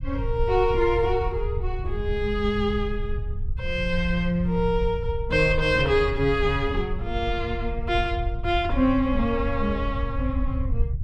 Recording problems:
low-frequency rumble; below 82 Hz, SNR 6 dB

